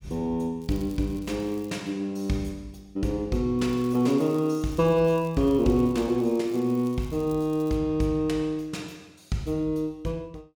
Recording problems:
crackle; from 0.5 to 2 s and from 3.5 to 8 s; loose cable, SNR 26 dB

